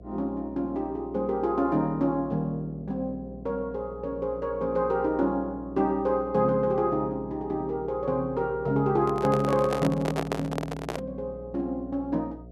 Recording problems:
hum; 60 Hz, harmonics up to 720 Hz, SNR 18 dB
microphone handling noise; from 9 to 11 s; peak +2 dB vs average level

